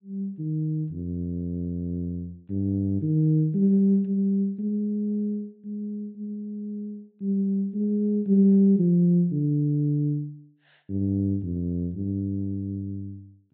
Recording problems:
treble cut off; nothing above 4 kHz

